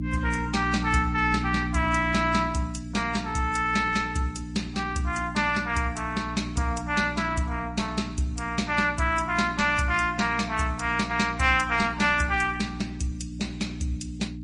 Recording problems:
lossy codec; Opus, then MP3, log-spectral distance 3 dB, nothing above 10.1 kHz
hum; 60 Hz, harmonics up to 300 Hz, SNR 9 dB

